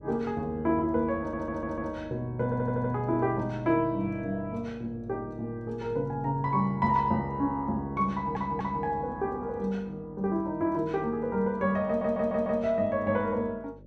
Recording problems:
hum; 50 Hz, harmonics up to 600 Hz, SNR 21 dB
stutter; 4 times, first at 1 s

